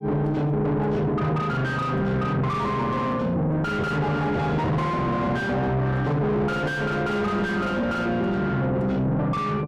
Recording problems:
distortion; soft clipping, signal-to-distortion ratio 6 dB

